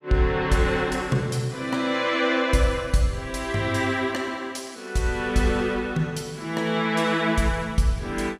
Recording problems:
none

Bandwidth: 14.5 kHz